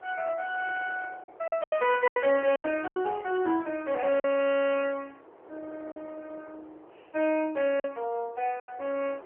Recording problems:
telephone audio; 300 Hz to 3.3 kHz, AMR-NB
wind noise; below 870 Hz, SNR 22 dB
packet loss; 7% of the sound replaced, filled with silence

